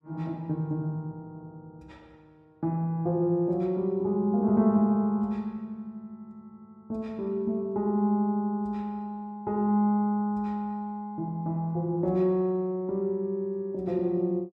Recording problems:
none

